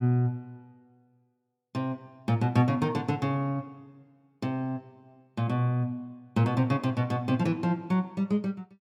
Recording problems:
none

